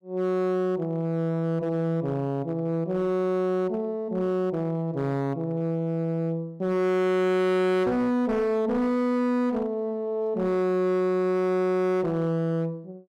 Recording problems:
distorted audio; hard clipping, signal-to-distortion ratio 7 dB

